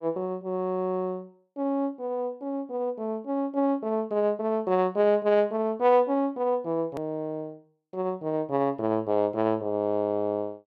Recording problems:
hard cut with a click; at 7 s

